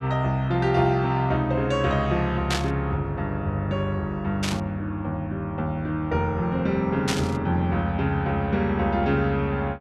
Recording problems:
static burst; at 2.5 s, at 4.5 s and at 7 s; peak +2 dB vs average level

